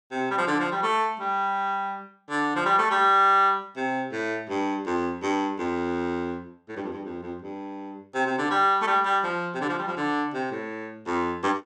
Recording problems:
none

